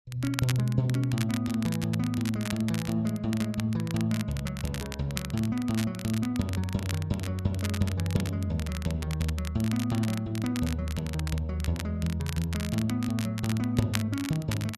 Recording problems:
crackling; vinyl, SNR 11 dB

